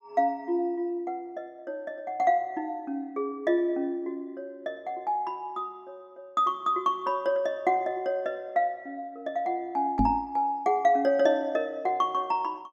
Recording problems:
microphone thump; at 10 s; peak +6 dB vs average level

